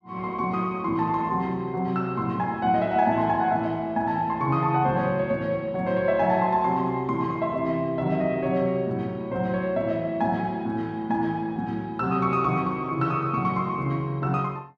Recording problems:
none

